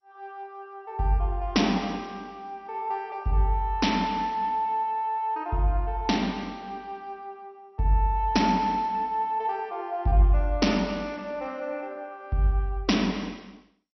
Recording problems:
lossy compression; MP2, log-spectral distance 2 dB, nothing above 5.8 kHz

